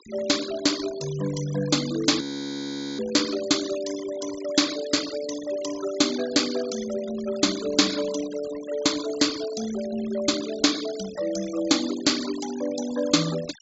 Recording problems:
treble missing; nothing above 8 kHz
denoising artefacts; signal-to-artefact ratio 12 dB
frozen audio; at 2 s for 1 s

